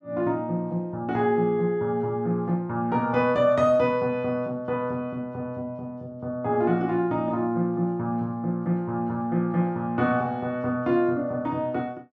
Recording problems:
none

